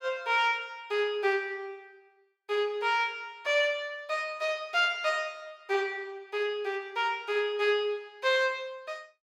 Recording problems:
none

